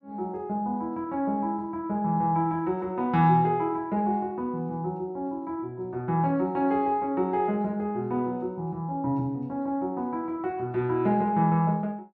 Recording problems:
none

